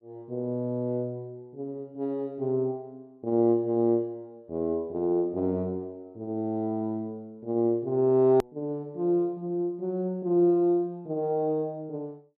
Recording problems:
click at an edit; at 8.5 s

